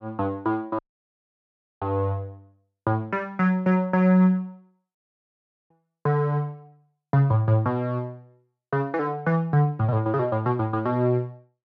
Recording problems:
audio cutting out; at 1 s for 1 s and at 5 s for 1 s

